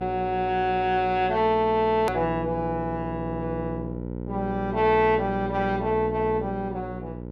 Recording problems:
hum; 60 Hz, harmonics up to 1 kHz, SNR 9 dB
edit click; at 2 s

